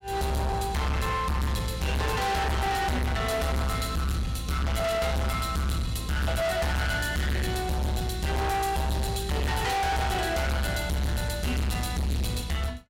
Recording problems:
distorted audio; hard clipping, signal-to-distortion ratio 6 dB

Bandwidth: 16 kHz